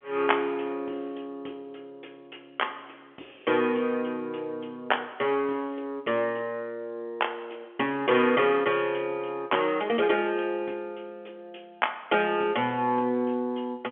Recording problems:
phone line; 220 Hz to 3.4 kHz, G.711

